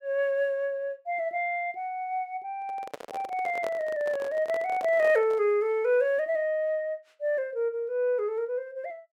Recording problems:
microphone handling noise; from 2.5 to 5.5 s; peak -5 dB vs average level

